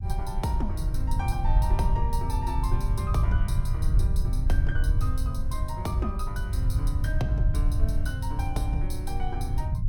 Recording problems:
rumble; below 90 Hz, SNR -6 dB

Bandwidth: 17 kHz